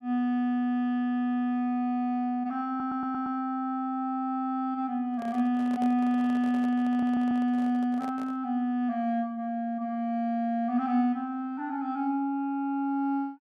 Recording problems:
stutter; at 2.5 s and at 7 s
handling noise; from 5 to 8.5 s; peak -9 dB vs average level

